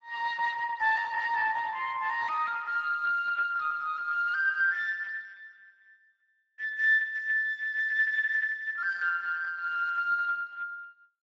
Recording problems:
lossy codec; Speex, log-spectral distance 3 dB

